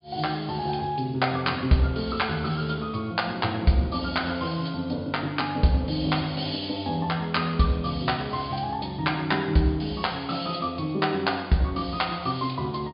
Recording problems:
treble cut off; nothing above 5 kHz

